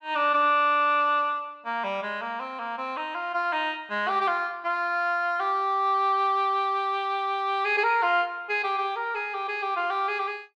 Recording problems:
none

